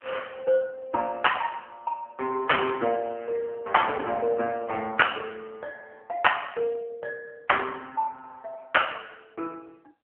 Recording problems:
telephone audio; 170 Hz to 3.2 kHz, AMR-NB
distortion; soft clipping, signal-to-distortion ratio 8 dB

